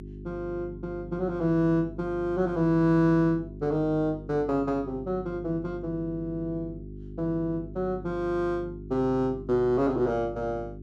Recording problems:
hum; 50 Hz, harmonics up to 400 Hz, SNR 14 dB

